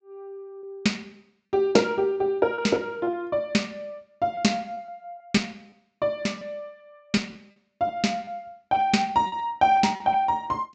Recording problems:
treble cut off; nothing above 8 kHz
lost packets; 7% of the sound replaced, filled with repeated pitch periods

